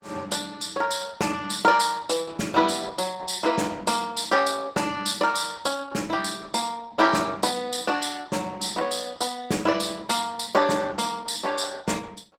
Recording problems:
lossy compression; Opus, log-spectral distance 5 dB

